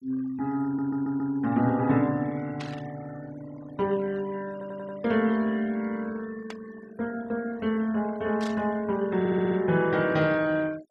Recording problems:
noise reduction artefacts; signal-to-artefact ratio 22 dB
audio stuttering; at 0.5 s, at 4.5 s and at 9 s
burst of static; at 2.5 s, at 6.5 s and at 8.5 s; peak -8 dB vs average level

